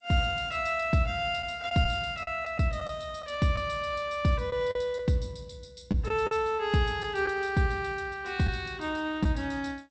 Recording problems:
lossy compression; G.722, log-spectral distance 3 dB, nothing above 8.2 kHz
lost packets; 4% of the sound replaced, filled with the last packet

